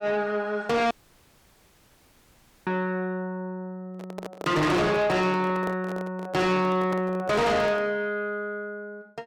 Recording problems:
distorted audio; soft clipping, signal-to-distortion ratio 7 dB
dropout; at 1 s for 2 s
microphone handling noise; from 4 to 8 s; peak -4 dB vs average level

